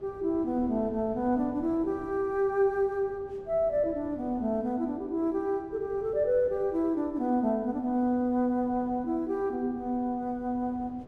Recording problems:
wind noise; below 400 Hz, SNR 21 dB

